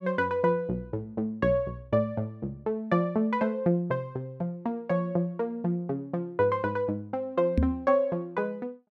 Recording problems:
microphone thump; at 7.5 s; peak +7 dB vs average level

